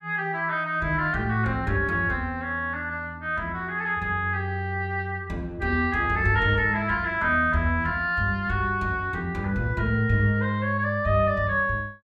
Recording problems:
none

